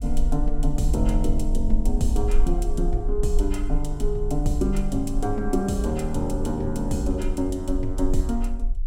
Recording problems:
rumble; below 40 Hz, strongest tone 18 Hz, SNR 3 dB

